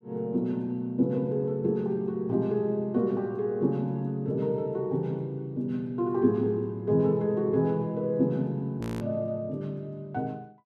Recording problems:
audio freezing; at 9 s

